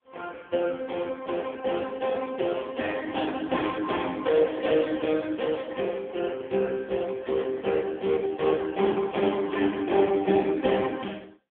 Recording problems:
telephone audio; 220 Hz to 3.4 kHz, AMR-NB

